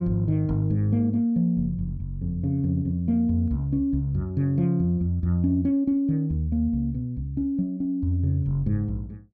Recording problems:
none

